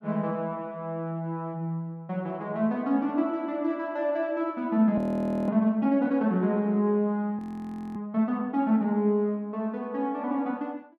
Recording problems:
audio freezing; at 5 s for 0.5 s and at 7.5 s for 0.5 s

